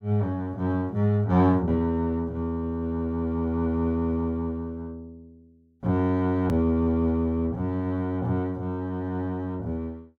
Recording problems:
click at an edit; at 6.5 s

